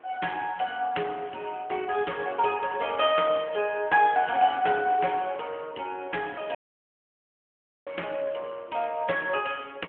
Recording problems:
phone line; 300 Hz to 3.3 kHz, AMR-NB
wind noise; below 1.6 kHz, SNR 23 dB
audio cutting out; at 6.5 s for 1.5 s

